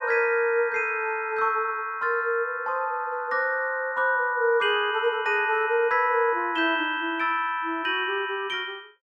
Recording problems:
none

